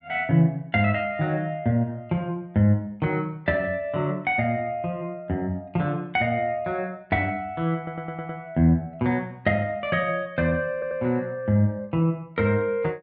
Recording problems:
stutter; at 8 s and at 11 s

